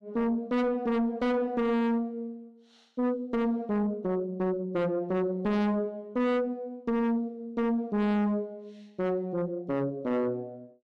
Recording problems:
distorted audio; soft clipping, signal-to-distortion ratio 5 dB

